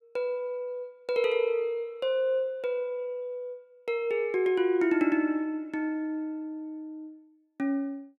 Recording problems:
none

